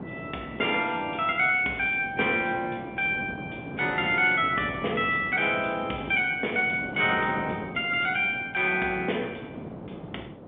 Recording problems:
telephone audio; 220 Hz to 3.5 kHz, G.711
wind on the microphone; below 530 Hz, SNR 14 dB

